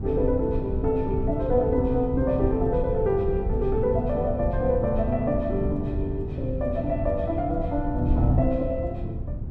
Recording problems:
wind on the microphone; below 130 Hz, SNR 4 dB

